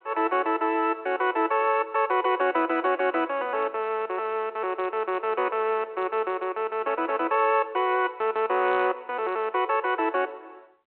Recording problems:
telephone audio; 280 Hz to 3.3 kHz, G.726

